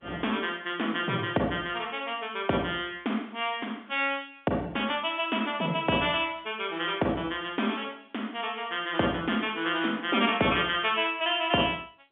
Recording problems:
telephone audio; 130 Hz to 3.5 kHz, G.711

